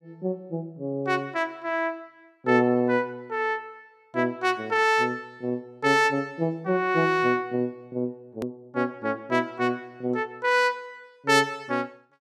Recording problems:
hard cut with a click; at 8.5 s

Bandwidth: 14.5 kHz